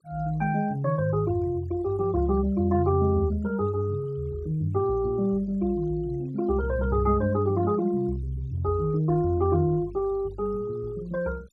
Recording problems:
denoising artefacts; signal-to-artefact ratio 27 dB

